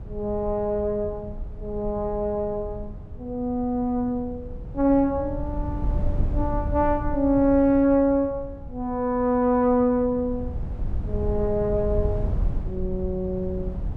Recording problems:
wind noise; below 98 Hz, SNR 9 dB

